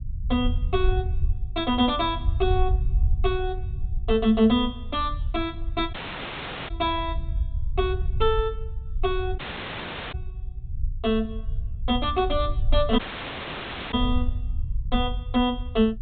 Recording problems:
treble missing; nothing above 4 kHz
low-frequency rumble; below 74 Hz, SNR 4 dB
audio cutting out; at 6 s for 1 s, at 9.5 s for 0.5 s and at 13 s for 1 s

